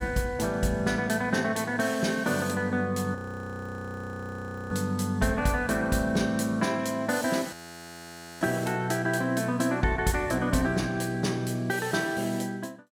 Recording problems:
audio freezing; at 3 s for 1.5 s and at 7.5 s for 1 s

